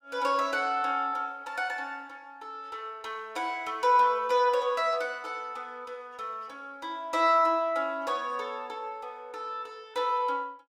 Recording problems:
none

